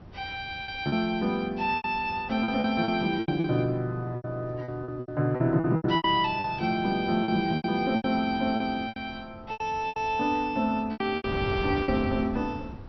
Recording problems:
lossy compression; MP2, log-spectral distance 2 dB, nothing above 4.8 kHz
wind on the microphone; below 350 Hz, SNR 15 dB
packet loss; 13% of the sound replaced, filled with repeated pitch periods

